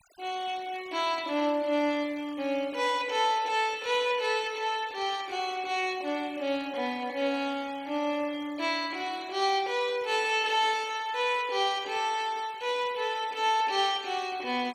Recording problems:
noise reduction artefacts; signal-to-artefact ratio 21 dB

